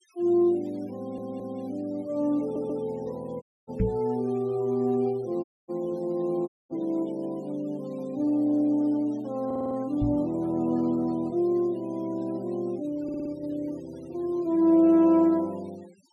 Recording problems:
denoising artefacts; signal-to-artefact ratio 27 dB
audio stuttering; 4 times, first at 1 s
audio cutting out; at 3.5 s, at 5.5 s and at 6.5 s
microphone bump; at 4 s and at 10 s; peak +4 dB vs average level

